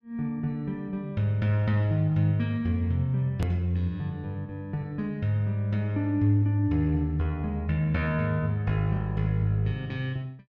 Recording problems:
edit click; at 3.5 s

